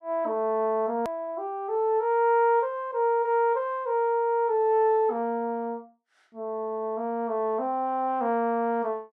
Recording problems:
click at an edit; at 1 s

